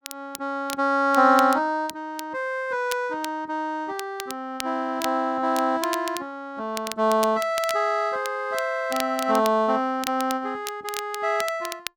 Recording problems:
crackling; vinyl, SNR 13 dB

